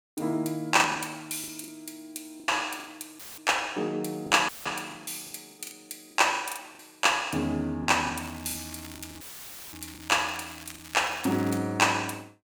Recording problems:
packet loss; 11% of the sound replaced, filled with the last packet
audio cutting out; at 3 s, at 4.5 s and at 9 s for 0.5 s; filled with static
crackle; from 8 to 12 s; loose cable, SNR 18 dB

